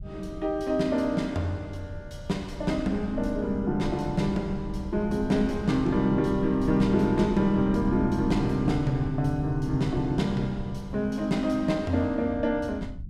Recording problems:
low-frequency rumble; below 120 Hz, SNR 12 dB

